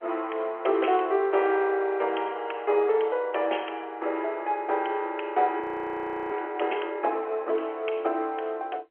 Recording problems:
phone line; 300 Hz to 3.3 kHz, G.711
audio freezing; at 5.5 s for 0.5 s

